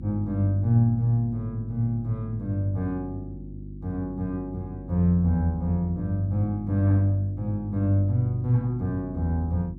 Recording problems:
electrical hum; 50 Hz, harmonics up to 350 Hz, SNR 14 dB

